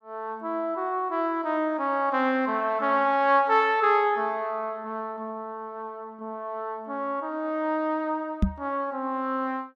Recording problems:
knock on the microphone; at 8.5 s; peak +7 dB vs average level

